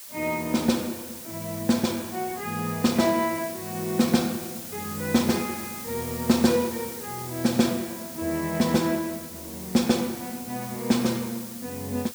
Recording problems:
background hiss; slope +2 dB per octave, SNR 11 dB

